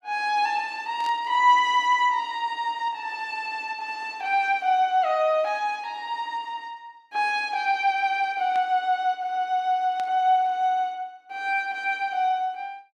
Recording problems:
static burst; at 1 s, at 8.5 s and at 10 s; peak -13 dB vs average level

